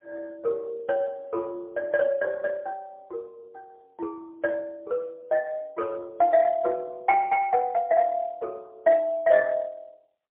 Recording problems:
phone line; 300 Hz to 3.4 kHz, AMR-NB, then MP3

